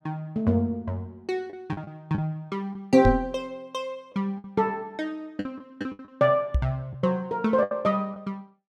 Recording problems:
lost packets; 6% of the sound replaced, filled with the last packet
microphone thump; at 3 s and at 6.5 s; peak +8 dB vs average level

